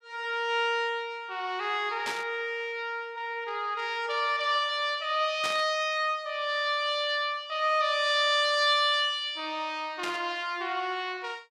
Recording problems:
burst of static; at 2 s, at 5.5 s and at 10 s; peak -3 dB vs average level

